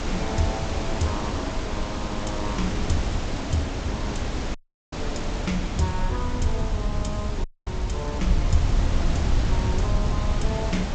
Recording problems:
codec artefacts; MP2, then G.722, log-spectral distance 3 dB, nothing above 7.6 kHz
hiss; slope -5 dB per octave, SNR 2 dB
low-frequency rumble; below 82 Hz, SNR -2 dB
dropout; at 4.5 s and at 7.5 s

